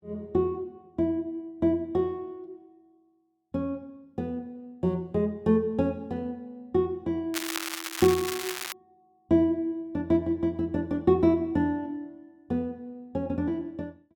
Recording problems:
crackling; from 7.5 to 8.5 s; loose cable, SNR 5 dB

